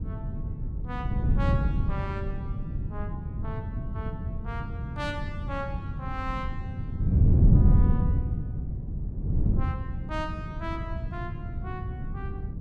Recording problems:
wind on the microphone; below 140 Hz, SNR -9 dB

